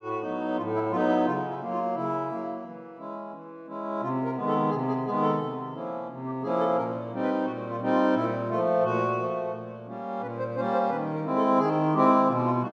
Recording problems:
none

